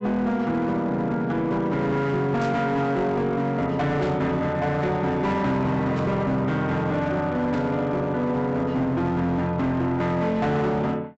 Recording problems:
treble missing; nothing above 7.9 kHz
distorted audio; hard clipping, signal-to-distortion ratio 11 dB
burst of static; 4 times, first at 2.5 s; peak -13 dB vs average level

